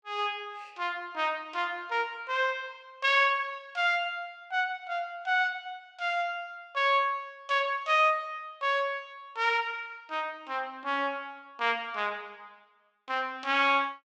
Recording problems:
none

